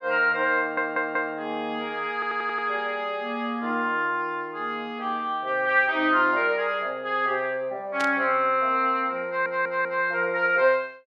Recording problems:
stutter; at 0.5 s, at 2 s and at 9.5 s
static burst; at 8 s; peak -5 dB vs average level

